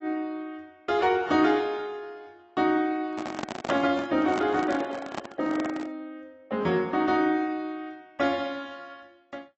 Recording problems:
codec artefacts; AAC, log-spectral distance 2 dB, nothing above 6.7 kHz
handling noise; from 3 to 6 s; peak -1 dB vs average level

